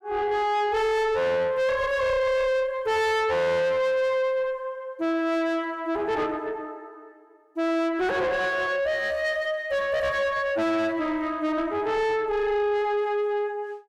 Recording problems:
distorted audio; soft clipping, signal-to-distortion ratio 5 dB

